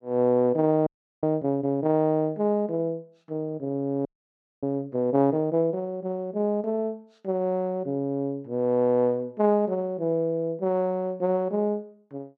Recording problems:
audio freezing; at 1 s and at 4 s for 0.5 s

